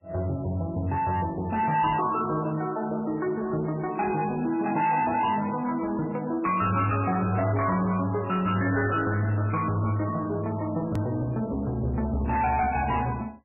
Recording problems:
lossy codec; MP3, log-spectral distance 3 dB, nothing above 2.4 kHz
distortion; soft clipping, signal-to-distortion ratio 10 dB
edit click; at 11 s

